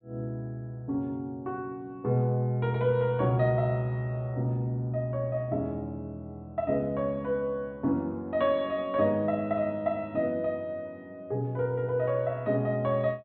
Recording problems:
low-pass filter; nothing above 4 kHz

